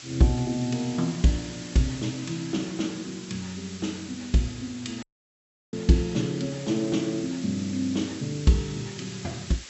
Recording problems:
treble missing; nothing above 7.8 kHz
background hiss; SNR 14 dB
dropout; at 5 s for 0.5 s

